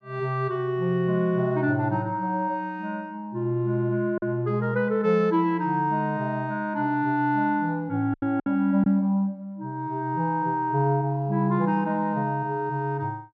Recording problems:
packet loss; 1.5% of the sound replaced, filled with silence

